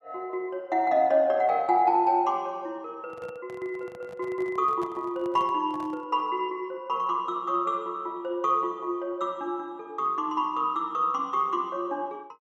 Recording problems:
handling noise; from 3 to 6 s; peak -11 dB vs average level

